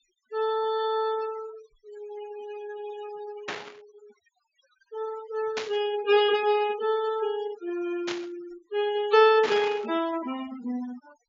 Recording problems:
low-pass filter; nothing above 7.3 kHz
denoising artefacts; signal-to-artefact ratio 16 dB
burst of static; 4 times, first at 3.5 s; peak -2 dB vs average level

